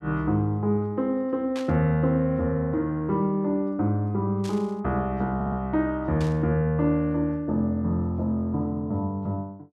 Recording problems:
burst of static; at 1.5 s, at 4.5 s and at 6 s; peak -9 dB vs average level
audio stuttering; at 5.5 s

